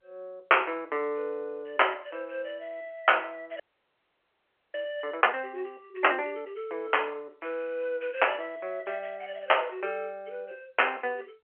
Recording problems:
telephone audio; 300 Hz to 3.1 kHz, G.711
frozen audio; at 3.5 s for 1 s

